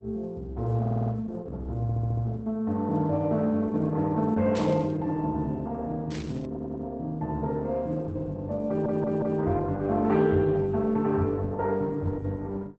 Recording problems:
lossy codec; Opus, log-spectral distance 2 dB, nothing above 7.6 kHz
audio stuttering; 4 times, first at 1 s
burst of static; at 4.5 s and at 6 s; peak -9 dB vs average level

